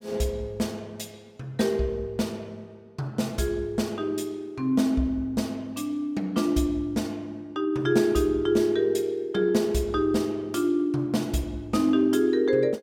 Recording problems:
none

